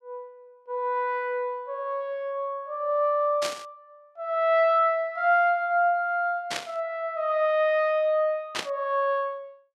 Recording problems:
burst of static; at 3.5 s, at 6.5 s and at 8.5 s; peak 0 dB vs average level

